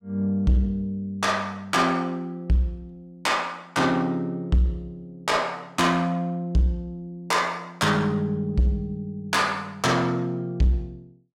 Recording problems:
distorted audio; soft clipping, signal-to-distortion ratio 11 dB

